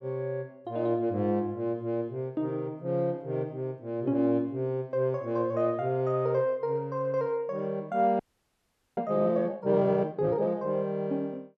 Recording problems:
audio freezing; at 8 s for 1 s

